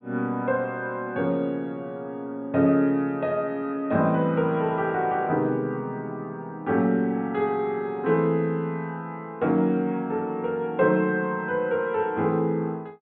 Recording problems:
low-pass filter; nothing above 4 kHz

